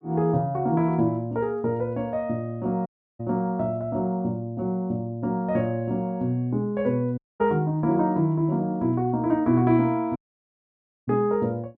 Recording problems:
dropout; at 3 s, at 7 s and at 10 s for 1 s

